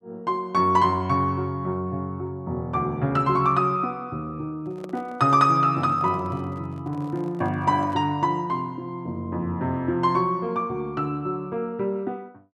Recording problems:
handling noise; from 4.5 to 8 s; peak -12 dB vs average level

